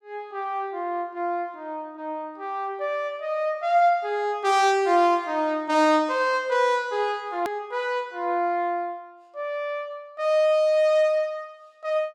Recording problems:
click at an edit; at 7.5 s

